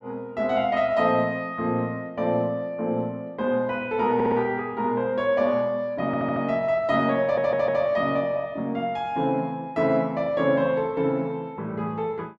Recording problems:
audio stuttering; at 4 s, at 6 s and at 7 s

